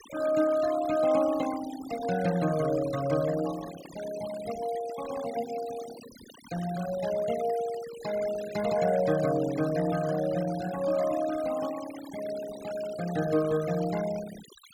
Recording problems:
denoising artefacts; signal-to-artefact ratio 14 dB

